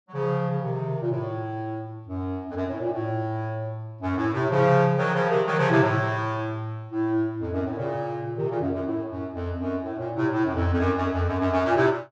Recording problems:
none

